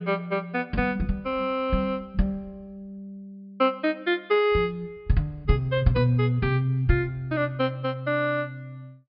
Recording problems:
treble cut off; nothing above 5.5 kHz

